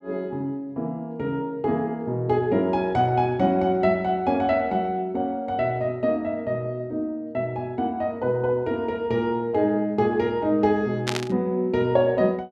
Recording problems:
static burst; at 11 s; peak +2 dB vs average level

